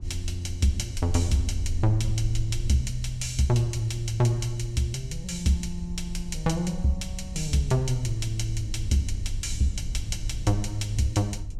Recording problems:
rumble; below 66 Hz, SNR 9 dB

